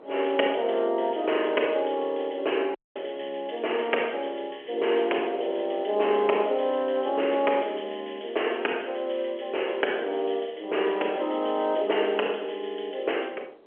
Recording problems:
phone line; 320 Hz to 3.1 kHz, G.711
wind on the microphone; below 650 Hz, SNR 24 dB
audio cutting out; at 3 s

